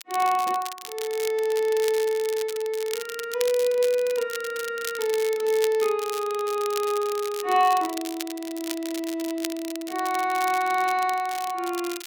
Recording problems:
crackling; vinyl, SNR 12 dB

